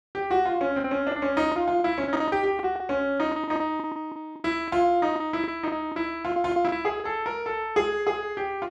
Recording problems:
packet loss; 12% of the sound replaced, filled with the last packet

